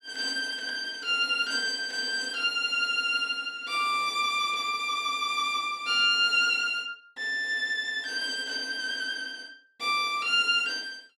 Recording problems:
none

